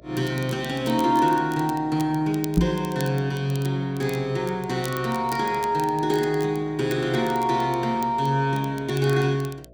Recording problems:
hum; 60 Hz, harmonics up to 660 Hz, SNR 26 dB
crackling; vinyl, SNR 20 dB
microphone thump; at 2.5 s; peak +7 dB vs average level

